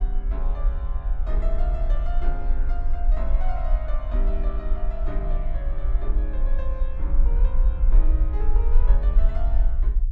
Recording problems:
rumble; below 44 Hz, strongest tone 20 Hz, SNR -12 dB

